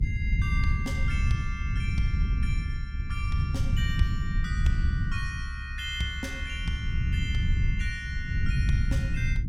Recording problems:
low-frequency rumble; below 110 Hz, SNR -6 dB

